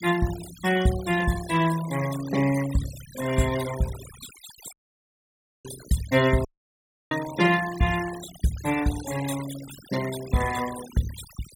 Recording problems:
noise reduction artefacts; signal-to-artefact ratio 13 dB
audio cutting out; at 4.5 s for 1 s and at 6.5 s for 0.5 s

